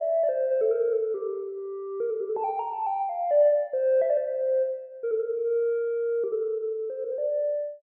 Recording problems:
low-pass filter; nothing above 4.7 kHz

